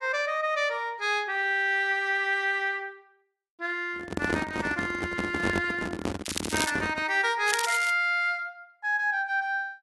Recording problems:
lossy compression; AAC, log-spectral distance 3 dB, nothing above 11.3 kHz
microphone handling noise; from 4 to 7 s; peak +3 dB vs average level
crackling; at 6.5 s and at 7.5 s; loose cable, SNR 6 dB

